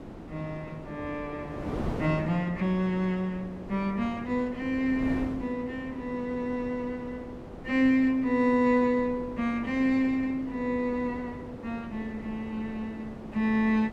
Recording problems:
wind on the microphone; below 520 Hz, SNR 12 dB

